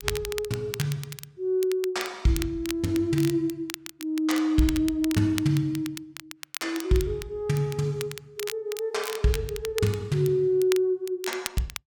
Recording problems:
crackling; vinyl, SNR 12 dB

